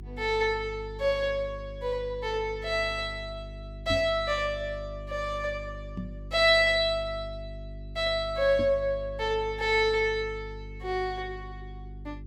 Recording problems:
mains hum; 50 Hz, harmonics up to 400 Hz, SNR 15 dB
knock on the microphone; at 4 s, at 6 s and at 8.5 s; peak -3 dB vs average level

